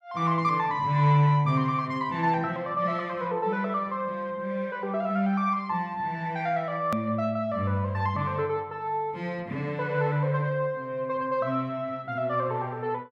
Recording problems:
hard cut with a click; at 7 s

